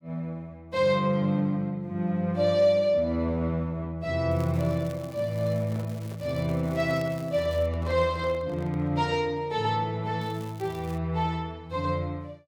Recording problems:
crackle; from 4.5 to 7.5 s and at 10 s; loose cable, SNR 24 dB
microphone handling noise; from 5.5 to 9 s; peak -11 dB vs average level

